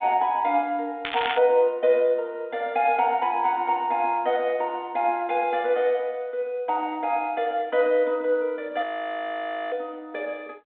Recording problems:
telephone audio; 240 Hz to 3.7 kHz, G.726
crackle; at 1 s; loose cable, SNR 8 dB
frozen audio; at 9 s for 1 s

